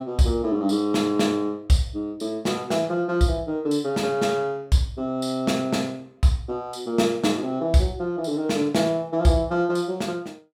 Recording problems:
none

